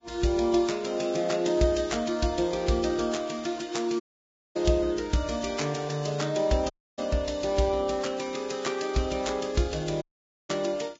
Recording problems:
codec artefacts; Vorbis, log-spectral distance 5 dB, nothing above 7.3 kHz
audio cutting out; at 4 s for 0.5 s, at 6.5 s and at 10 s

